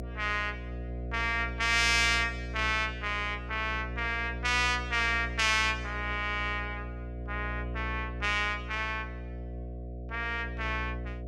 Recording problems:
hum; 60 Hz, harmonics up to 720 Hz, SNR 9 dB

